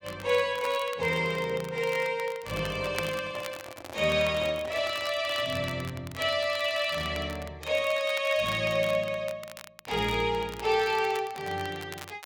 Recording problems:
crackle; vinyl, SNR 17 dB
handling noise; from 2.5 to 5.5 s; peak -10 dB vs average level

